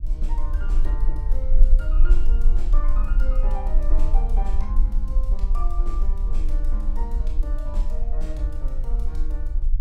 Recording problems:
rumble; below 38 Hz, strongest tone 18 Hz, SNR -13 dB

